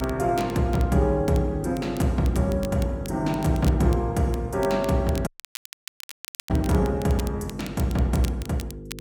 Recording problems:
hum; 50 Hz, harmonics up to 500 Hz, SNR 13 dB
crackling; vinyl, SNR 19 dB
dropout; at 5.5 s for 1 s

